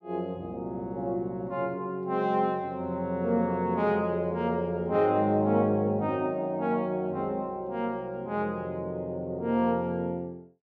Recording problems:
none

